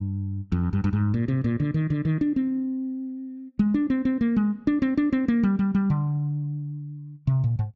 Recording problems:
none

